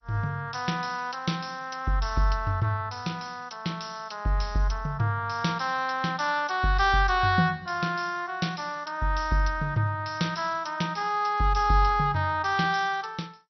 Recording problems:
lossy codec; MP2, log-spectral distance 5 dB, nothing above 5.8 kHz

